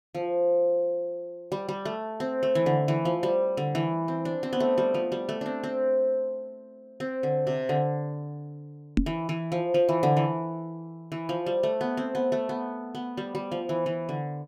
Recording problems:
microphone bump; at 9 s; peak +7 dB vs average level

